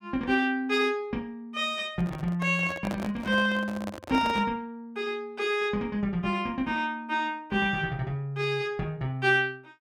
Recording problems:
microphone handling noise; from 2 to 4.5 s; peak -3 dB vs average level

